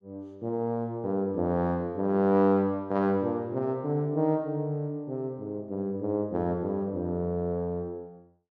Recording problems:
none

